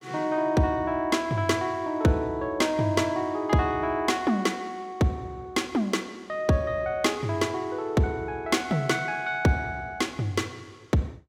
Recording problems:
none

